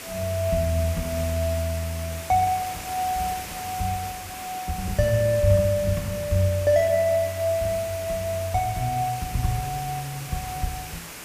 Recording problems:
hiss; slope -2 dB per octave, SNR 11 dB

